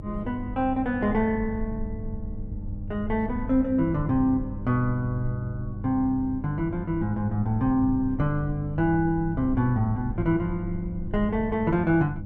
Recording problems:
mains hum; 50 Hz, harmonics up to 600 Hz, SNR 12 dB
rumble; below 86 Hz, SNR 12 dB

